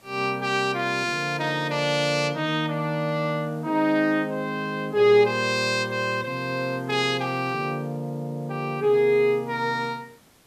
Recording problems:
background hiss; slope -3 dB per octave, SNR 29 dB

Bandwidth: 14.5 kHz